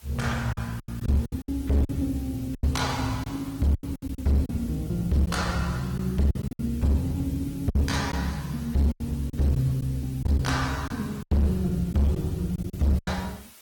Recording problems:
lossy codec; Opus, log-spectral distance 4 dB, nothing above 18.3 kHz
distorted audio; hard clipping, signal-to-distortion ratio 11 dB
hiss; slope 0 dB per octave, SNR 23 dB
packet loss; 9% of the sound replaced, filled with silence

